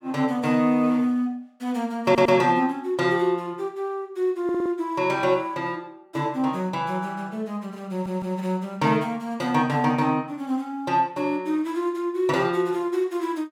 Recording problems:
stutter; at 2 s, at 4.5 s and at 8 s

